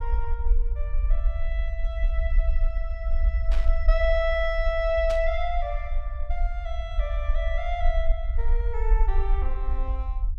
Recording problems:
low-frequency rumble; below 48 Hz, SNR -2 dB
static burst; at 3.5 s and at 5 s; peak -4 dB vs average level

